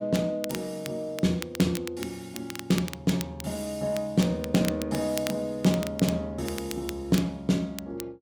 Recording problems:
crackling; vinyl, SNR 12 dB

